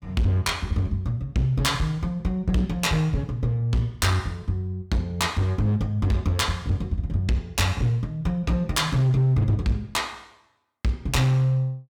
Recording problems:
distorted audio; hard clipping, uneven, signal-to-distortion ratio 10 dB

